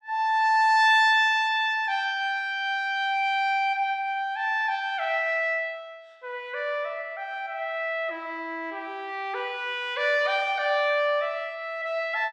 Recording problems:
none

